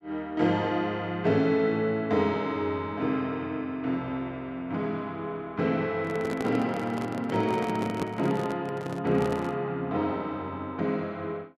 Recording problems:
handling noise; from 6 to 9.5 s; peak 0 dB vs average level

